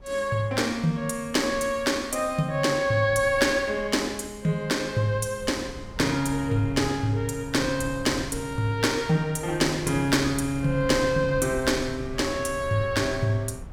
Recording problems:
wind on the microphone; below 160 Hz, SNR 16 dB

